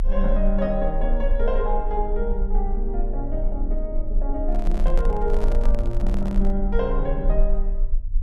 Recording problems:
low-frequency rumble; below 32 Hz, strongest tone 28 Hz, SNR -1 dB
handling noise; from 4.5 to 6.5 s; peak -3 dB vs average level

